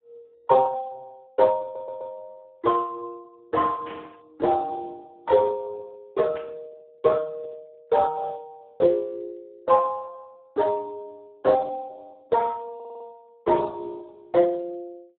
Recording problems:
telephone audio; 300 Hz to 2 kHz, Speex
audio stuttering; at 1.5 s and at 13 s
burst of static; at 4 s and at 6.5 s; peak -13 dB vs average level

